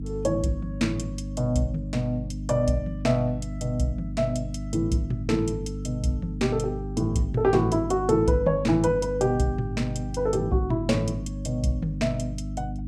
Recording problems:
hum; 50 Hz, harmonics up to 300 Hz, SNR 7 dB

